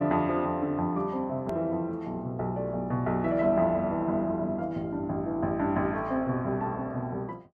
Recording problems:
hard cut with a click; at 1.5 s

